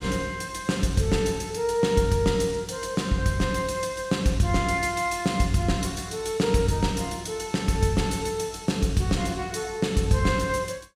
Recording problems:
none

